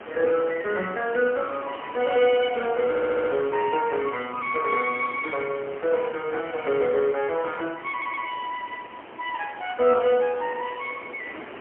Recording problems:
phone line; 260 Hz to 3.2 kHz, AMR-NB, then MP3
hiss; SNR 15 dB
audio stuttering; at 3 s and at 8 s

